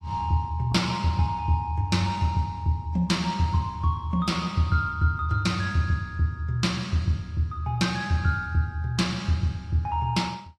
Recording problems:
codec artefacts; AAC, log-spectral distance 2 dB, nothing above 13.5 kHz

